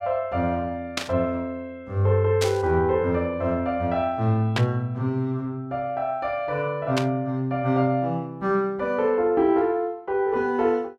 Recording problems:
burst of static; 4 times, first at 1 s; peak +2 dB vs average level

